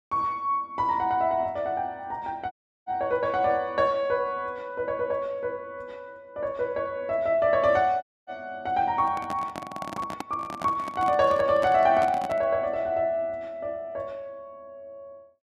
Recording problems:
audio cutting out; at 2.5 s and at 8 s
microphone handling noise; from 9 to 12 s; peak -4 dB vs average level

